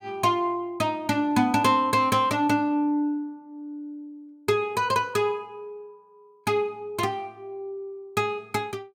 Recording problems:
none

